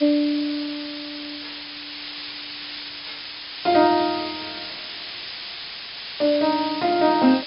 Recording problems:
low-pass filter; nothing above 5.5 kHz
background hiss; SNR 10 dB

